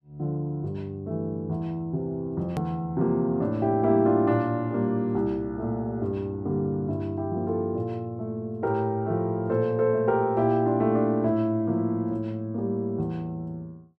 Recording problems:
edit click; at 2.5 s

